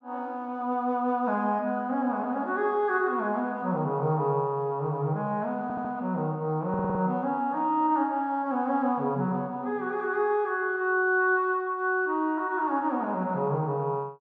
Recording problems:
stutter; at 5.5 s and at 6.5 s

